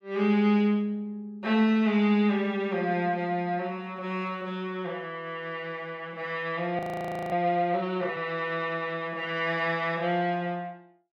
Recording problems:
frozen audio; at 7 s for 0.5 s

